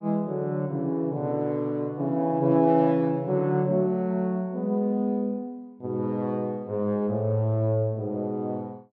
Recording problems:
none

